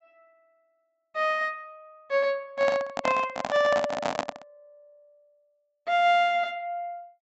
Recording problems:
treble cut off; nothing above 7.8 kHz
microphone handling noise; from 2.5 to 4.5 s; peak +2 dB vs average level

